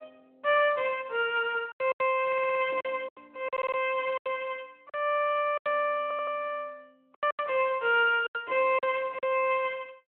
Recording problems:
telephone audio; 320 Hz to 3.1 kHz, Speex
lost packets; 9% of the sound replaced, filled with silence
stutter; at 2.5 s, at 3.5 s and at 6 s

